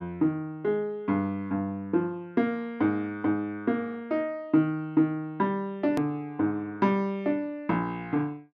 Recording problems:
edit click; at 6 s

